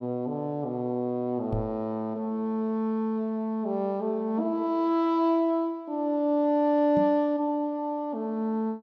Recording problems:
microphone thump; at 1.5 s and at 7 s; peak 0 dB vs average level

